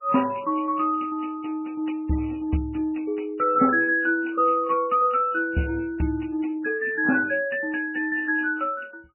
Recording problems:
lossy codec; MP3, log-spectral distance 5 dB, nothing above 2.9 kHz

